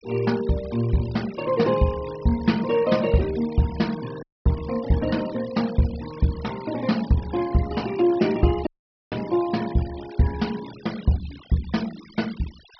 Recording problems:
treble missing; nothing above 5.5 kHz
noise reduction artefacts; signal-to-artefact ratio 18 dB
audio cutting out; at 4 s and at 8.5 s

